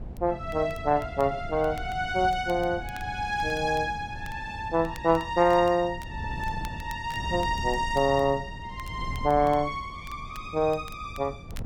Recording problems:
wind on the microphone; below 160 Hz, SNR 13 dB
crackle; vinyl, SNR 26 dB

